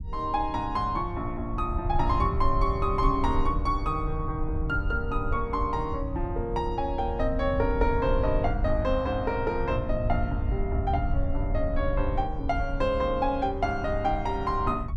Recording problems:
low-frequency rumble; below 82 Hz, SNR 4 dB

